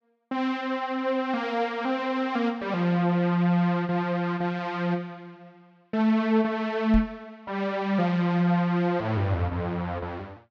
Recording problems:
microphone thump; at 7 s; peak +1 dB vs average level

